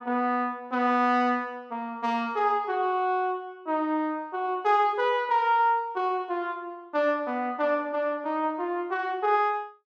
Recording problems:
none

